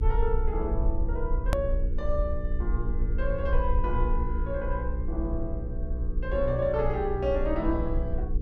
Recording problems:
hum; 60 Hz, harmonics up to 480 Hz, SNR 5 dB
rumble; below 52 Hz, SNR 1 dB
hard cut with a click; at 1.5 s

